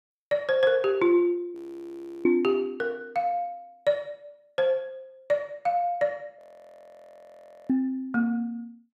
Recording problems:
frozen audio; at 1.5 s for 0.5 s and at 6.5 s for 1.5 s

